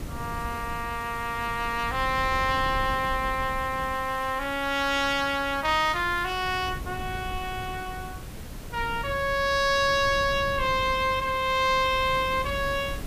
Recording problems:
background hiss; slope -2 dB per octave, SNR 19 dB
wind noise; below 180 Hz, SNR 14 dB

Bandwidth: 15 kHz